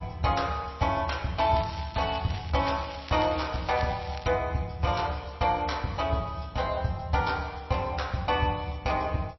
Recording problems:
lossy compression; MP3, log-spectral distance 5 dB, nothing above 5.7 kHz
crackle; from 1.5 to 4.5 s; loose cable, SNR 16 dB

